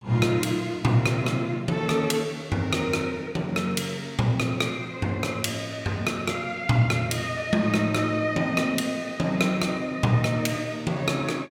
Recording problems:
none

